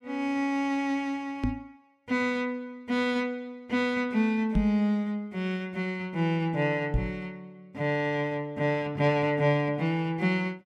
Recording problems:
knock on the microphone; at 1.5 s, at 4.5 s and at 7 s; peak +5 dB vs average level

